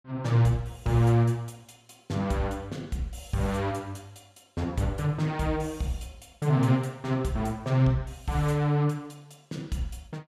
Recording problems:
none

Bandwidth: 15 kHz